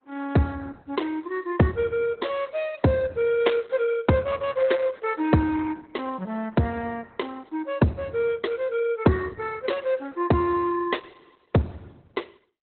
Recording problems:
lossy codec; Opus, log-spectral distance 4 dB, nothing above 4 kHz

